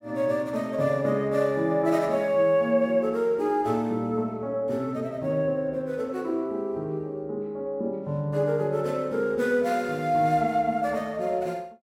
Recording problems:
none

